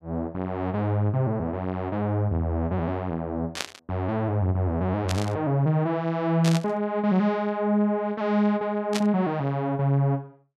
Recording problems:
static burst; 4 times, first at 3.5 s; peak +1 dB vs average level

